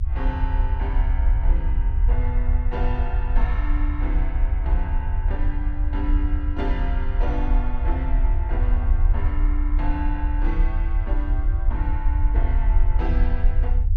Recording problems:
low-frequency rumble; below 60 Hz, SNR -9 dB

